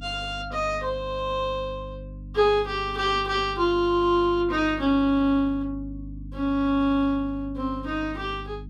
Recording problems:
mains hum; 50 Hz, harmonics up to 300 Hz, SNR 15 dB

